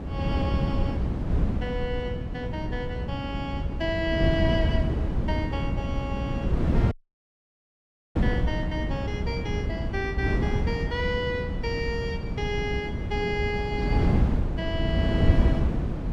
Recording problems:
electrical hum; 60 Hz, harmonics up to 600 Hz, SNR 10 dB
wind on the microphone; below 200 Hz, SNR -4 dB
audio cutting out; at 7 s for 1 s

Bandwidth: 16 kHz